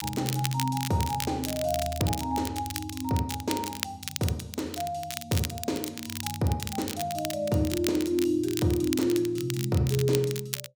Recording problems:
crackling; vinyl, SNR 7 dB

